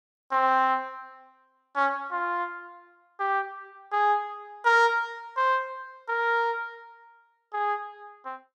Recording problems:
none

